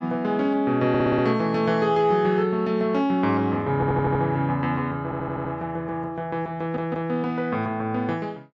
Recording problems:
audio stuttering; 4 times, first at 1 s

